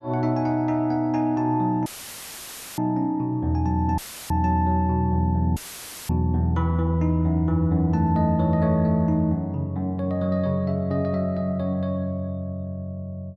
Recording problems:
dropout; at 2 s for 1 s, at 4 s and at 5.5 s for 0.5 s; filled with static

